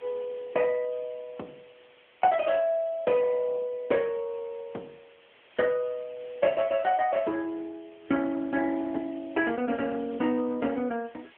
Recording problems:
telephone audio; 190 Hz to 3.3 kHz, AMR-NB
background hiss; SNR 27 dB

